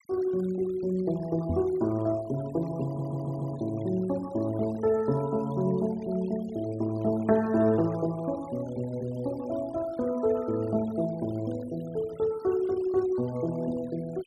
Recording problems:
noise reduction artefacts; signal-to-artefact ratio 23 dB
knock on the microphone; at 1.5 s; peak +2 dB vs average level
stutter; at 3 s

